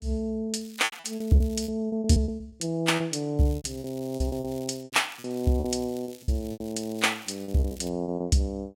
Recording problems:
lost packets; 15% of the sound replaced, filled with repeated pitch periods
crackle; from 0.5 to 1.5 s, from 3.5 to 5 s and from 5.5 to 8 s; loose cable, SNR 21 dB

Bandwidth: 16 kHz